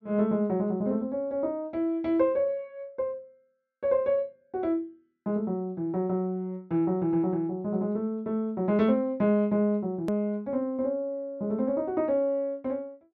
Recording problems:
low-pass filter; nothing above 7 kHz
click at an edit; at 10 s

